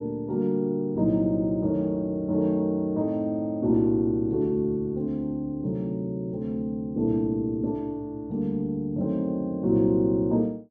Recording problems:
none

